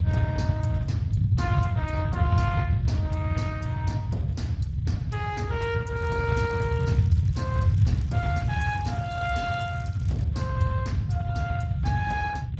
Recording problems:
lossy codec; Speex, log-spectral distance 2 dB, nothing above 7.6 kHz
low-frequency rumble; below 130 Hz, SNR -6 dB
crackle; from 6 to 10 s; loose cable, SNR 21 dB

